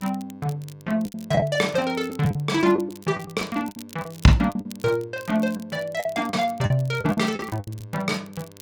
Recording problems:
hum; 50 Hz, harmonics up to 2.2 kHz, SNR 27 dB
crackling; vinyl, SNR 23 dB
packet loss; 10% of the sound replaced, filled with the last packet

